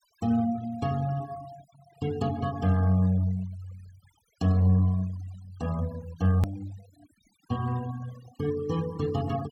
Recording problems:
denoising artefacts; signal-to-artefact ratio 20 dB
hard cut with a click; at 6.5 s

